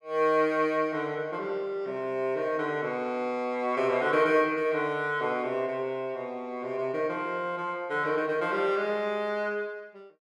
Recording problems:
none

